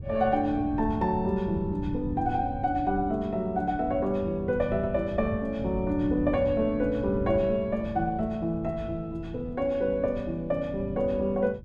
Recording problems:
wind noise; below 140 Hz, SNR 11 dB

